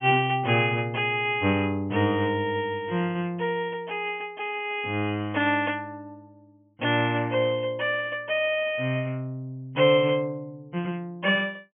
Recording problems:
treble missing; nothing above 3.2 kHz

